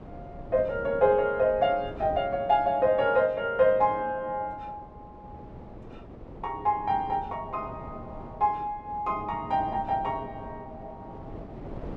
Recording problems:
wind noise; below 460 Hz, SNR 18 dB

